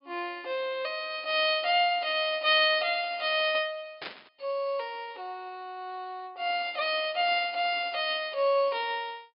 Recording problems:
low-pass filter; nothing above 5.5 kHz
burst of static; at 4 s; peak -6 dB vs average level

